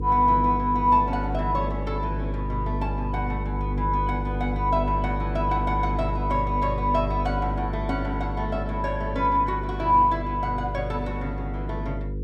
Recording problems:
electrical hum; 50 Hz, harmonics up to 500 Hz, SNR 4 dB

